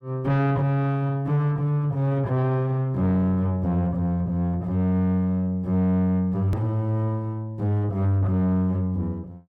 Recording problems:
distorted audio; soft clipping, signal-to-distortion ratio 11 dB
click at an edit; at 6.5 s

